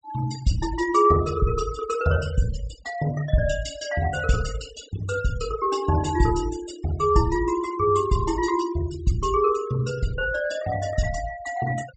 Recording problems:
low-pass filter; nothing above 8 kHz
noise reduction artefacts; signal-to-artefact ratio 16 dB

